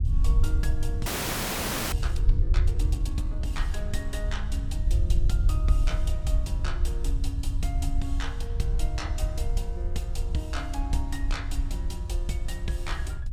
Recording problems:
rumble; below 66 Hz, SNR -7 dB
frozen audio; at 1 s for 1 s

